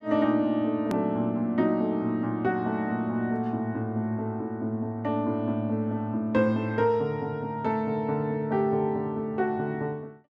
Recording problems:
hard cut with a click; at 1 s

